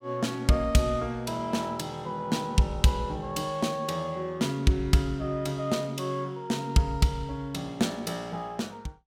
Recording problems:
none

